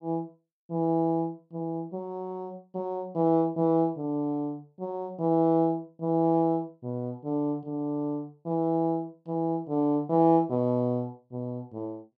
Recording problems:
none

